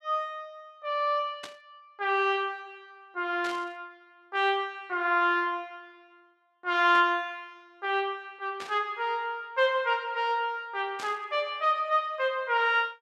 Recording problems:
static burst; 5 times, first at 1.5 s; peak -8 dB vs average level

